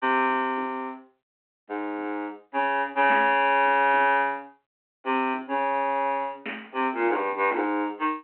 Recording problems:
phone line; 220 Hz to 3.1 kHz, G.726

